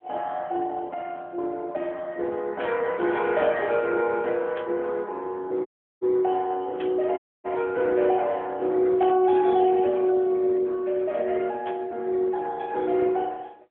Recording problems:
telephone audio; 280 Hz to 3.4 kHz, AMR-NB
static burst; 5 times, first at 2.5 s; peak -7 dB vs average level
audio cutting out; at 5.5 s and at 7 s

